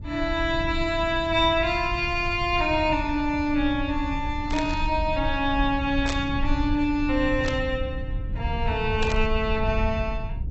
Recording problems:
lossy compression; AAC, log-spectral distance 2 dB, nothing above 7.3 kHz
rumble; below 84 Hz, SNR 7 dB
static burst; 4 times, first at 4.5 s; peak -2 dB vs average level

